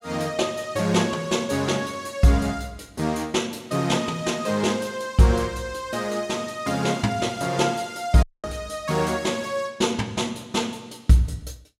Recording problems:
audio cutting out; at 8 s

